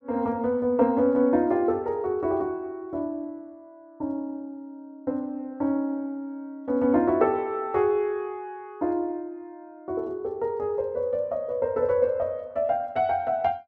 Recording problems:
none

